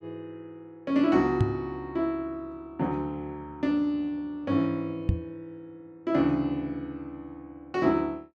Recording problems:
knock on the microphone; at 1.5 s and at 5 s; peak +7 dB vs average level

